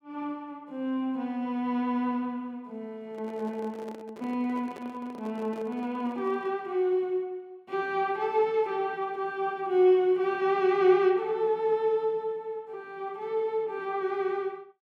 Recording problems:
handling noise; from 3 to 6.5 s; peak -11 dB vs average level

